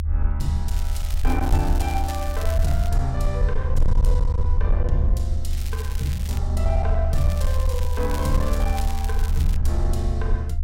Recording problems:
distorted audio; hard clipping, uneven, signal-to-distortion ratio 11 dB
low-frequency rumble; below 76 Hz, SNR -4 dB
crackling; from 0.5 to 3 s, at 5.5 s and from 7 to 9.5 s; loose cable, SNR 11 dB

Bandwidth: 16 kHz